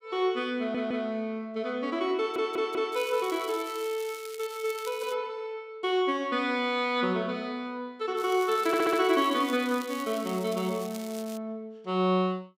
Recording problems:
audio stuttering; at 0.5 s, at 2 s and at 8.5 s
crackle; from 2.5 to 5 s and from 8 to 11 s; loose cable, SNR 16 dB

